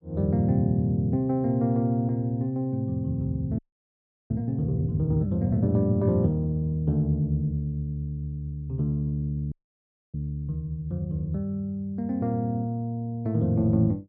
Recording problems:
audio freezing; at 3.5 s for 0.5 s and at 9.5 s for 0.5 s

